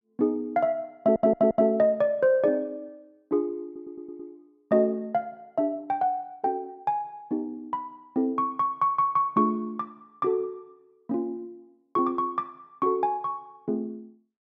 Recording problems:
audio stuttering; at 1 s, at 3.5 s and at 9 s

